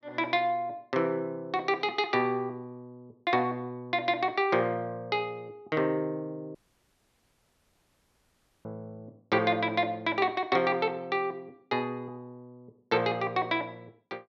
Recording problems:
audio cutting out; at 6.5 s for 2 s

